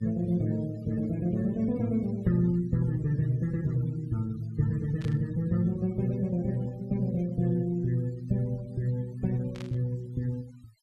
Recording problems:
denoising artefacts; signal-to-artefact ratio 25 dB
burst of static; at 5 s and at 9.5 s; peak -12 dB vs average level

